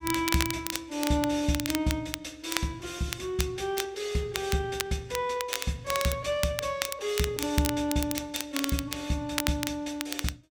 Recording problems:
crackle; vinyl, SNR 4 dB

